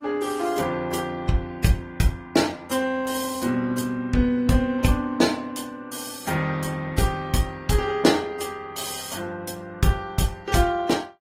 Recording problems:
lossy compression; Opus, then AAC, log-spectral distance 4 dB, nothing above 15.5 kHz

